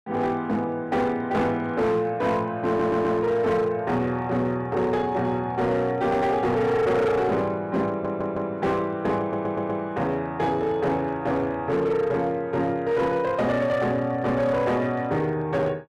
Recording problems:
distortion; hard clipping, signal-to-distortion ratio 11 dB
audio stuttering; at 2.5 s, at 8 s and at 9 s

